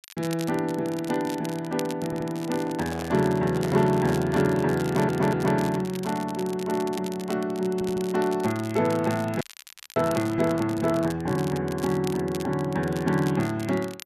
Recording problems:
crackle; vinyl, SNR 17 dB
stutter; at 2 s, at 5 s and at 7.5 s
microphone handling noise; from 2.5 to 4 s; peak -8 dB vs average level
audio freezing; at 9.5 s for 0.5 s

